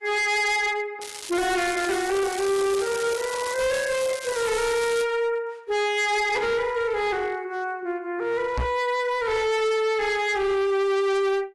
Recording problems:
lossy codec; AAC, log-spectral distance 4 dB, nothing above 11.6 kHz
distorted audio; hard clipping, signal-to-distortion ratio 7 dB
crackling; from 1 to 5 s; loose cable, SNR 10 dB
knock on the microphone; at 8.5 s; peak 0 dB vs average level

